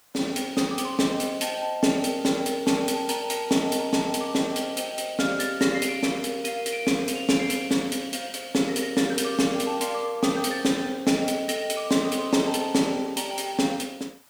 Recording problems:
hiss; SNR 29 dB

